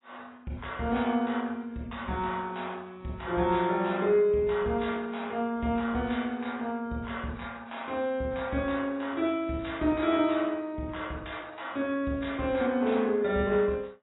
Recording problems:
lossy compression; AAC, log-spectral distance 4 dB, nothing above 3.8 kHz

